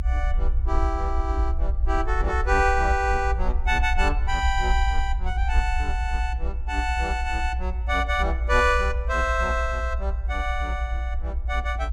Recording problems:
low-frequency rumble; below 60 Hz, SNR 1 dB

